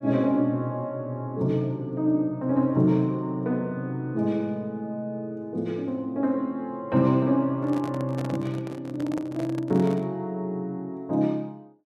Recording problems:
handling noise; from 7.5 to 10 s; peak -5 dB vs average level

